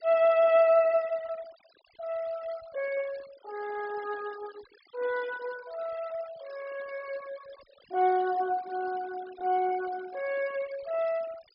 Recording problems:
low-pass filter; nothing above 5.5 kHz
noise reduction artefacts; signal-to-artefact ratio 21 dB

